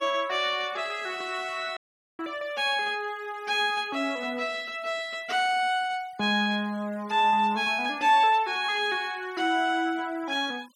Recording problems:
noise reduction artefacts; signal-to-artefact ratio 25 dB
dropout; at 2 s

